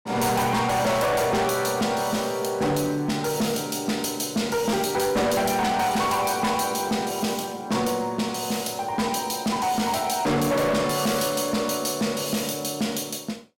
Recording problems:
distorted audio; soft clipping, signal-to-distortion ratio 8 dB

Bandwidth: 16.5 kHz